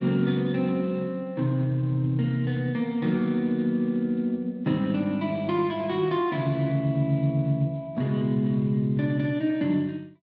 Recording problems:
lossy codec; Speex, log-spectral distance 2 dB

